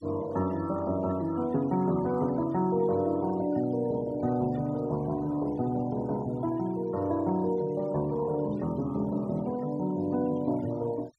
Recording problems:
noise reduction artefacts; signal-to-artefact ratio 22 dB

